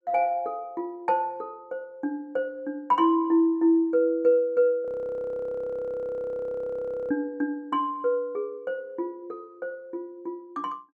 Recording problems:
audio freezing; at 5 s for 2.5 s

